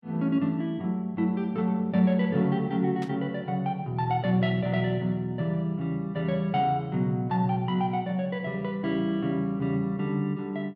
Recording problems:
static burst; at 3 s; peak -12 dB vs average level

